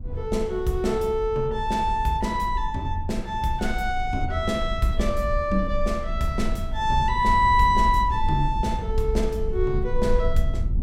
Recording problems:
low-frequency rumble; below 60 Hz, strongest tone 22 Hz, SNR 6 dB

